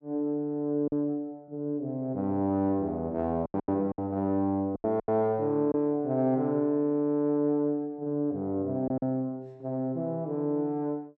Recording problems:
packet loss; 5% of the sound replaced, filled with silence

